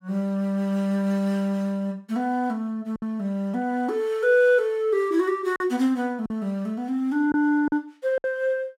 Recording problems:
packet loss; 3% of the sound replaced, filled with silence

